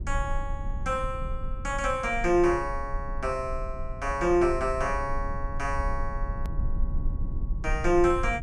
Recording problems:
low-frequency rumble; below 58 Hz, SNR 7 dB
click at an edit; at 6.5 s

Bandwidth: 14.5 kHz